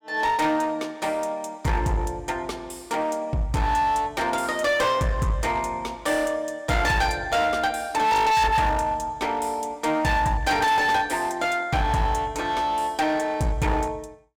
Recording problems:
distortion; hard clipping, uneven, signal-to-distortion ratio 7 dB

